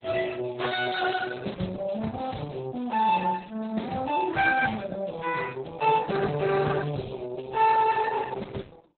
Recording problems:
lossy codec; Speex, then Opus, log-spectral distance 7 dB, nothing above 4 kHz

